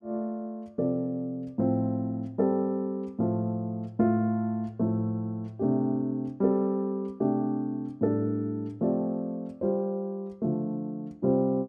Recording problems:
none

